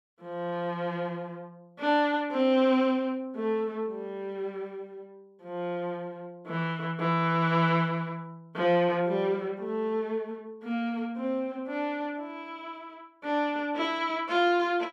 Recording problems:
none

